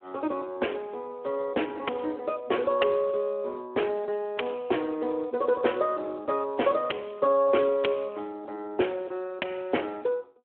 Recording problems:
telephone audio; 260 Hz to 3.3 kHz, Speex

